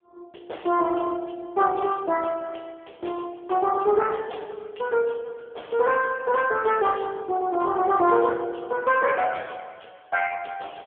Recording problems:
phone line; 320 Hz to 2.9 kHz, AMR-NB

